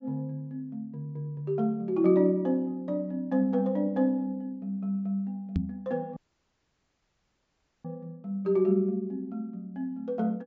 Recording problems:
treble cut off; nothing above 7.4 kHz
microphone bump; at 5.5 s; peak +4 dB vs average level
audio cutting out; at 6 s for 1.5 s

